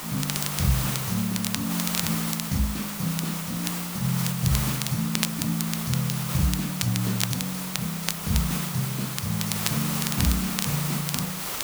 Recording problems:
hiss; SNR 2 dB
crackling; vinyl, SNR 5 dB

